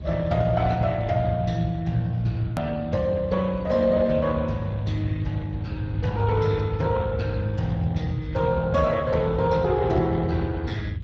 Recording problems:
lossy codec; Speex, log-spectral distance 3 dB, nothing above 13.1 kHz
rumble; below 130 Hz, SNR 9 dB
hard cut with a click; at 2.5 s

